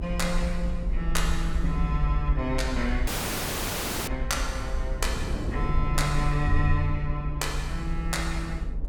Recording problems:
hum; 50 Hz, harmonics up to 650 Hz, SNR 20 dB
rumble; below 58 Hz, SNR 2 dB
wind noise; below 300 Hz, SNR 8 dB
dropout; at 3 s for 1 s

